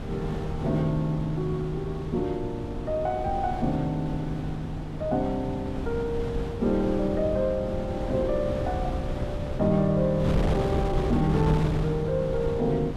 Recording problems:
wind noise; below 280 Hz, SNR 5 dB

